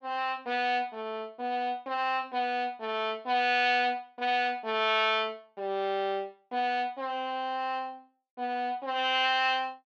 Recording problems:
none

